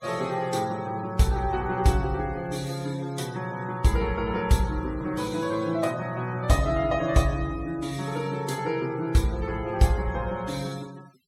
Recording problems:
noise reduction artefacts; signal-to-artefact ratio 21 dB

